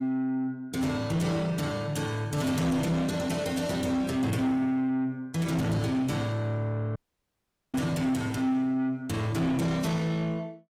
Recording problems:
lossy codec; AAC, log-spectral distance 2 dB, nothing above 15.1 kHz
distorted audio; soft clipping, signal-to-distortion ratio 10 dB
dropout; at 7 s for 1 s

